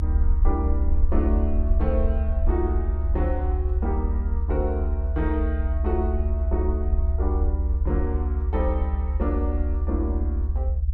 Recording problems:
low-frequency rumble; below 72 Hz, SNR -6 dB

